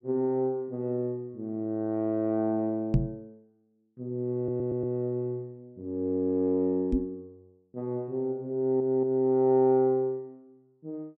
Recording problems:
knock on the microphone; at 3 s and at 7 s; peak +8 dB vs average level
audio stuttering; at 4.5 s and at 8.5 s

